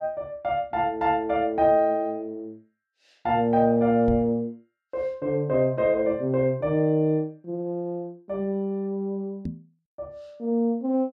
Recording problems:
microphone bump; at 4 s and at 9.5 s; peak -2 dB vs average level

